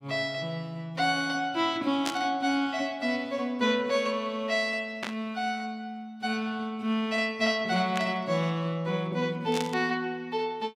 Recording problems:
burst of static; 4 times, first at 2 s; peak 0 dB vs average level

